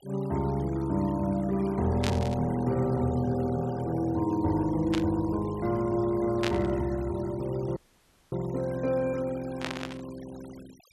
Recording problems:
denoising artefacts; signal-to-artefact ratio 22 dB
burst of static; 4 times, first at 2 s; peak +1 dB vs average level
dropout; at 8 s for 0.5 s

